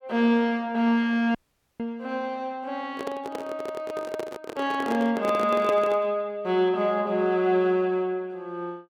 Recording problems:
audio cutting out; at 1.5 s
microphone handling noise; from 3 to 6 s; peak 0 dB vs average level

